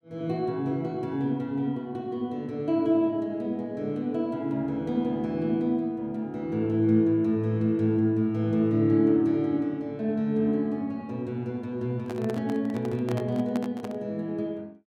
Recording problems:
microphone handling noise; from 12 to 14 s; peak -5 dB vs average level

